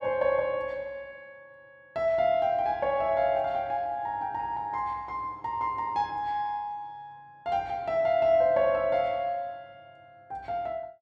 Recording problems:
none

